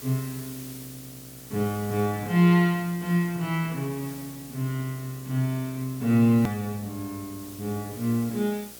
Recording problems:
electrical hum; 60 Hz, harmonics up to 1.5 kHz, SNR 26 dB
background hiss; slope +1 dB per octave, SNR 17 dB
click at an edit; at 6.5 s

